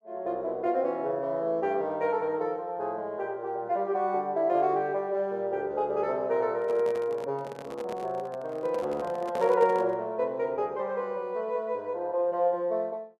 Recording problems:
handling noise; from 6.5 to 10 s; peak -3 dB vs average level

